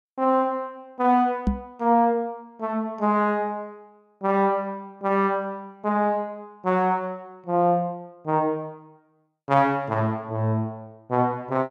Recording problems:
knock on the microphone; at 1.5 s; peak +5 dB vs average level

